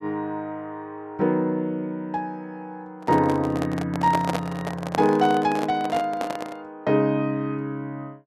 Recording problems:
microphone handling noise; from 3 to 6.5 s; peak +2 dB vs average level

